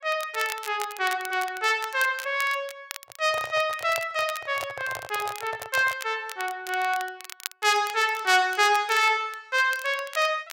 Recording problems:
crackle; vinyl, SNR 15 dB
microphone handling noise; from 3 to 6 s; peak -8 dB vs average level

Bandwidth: 16 kHz